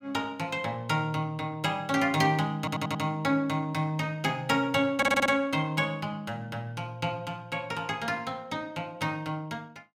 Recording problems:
audio stuttering; at 2.5 s and at 5 s

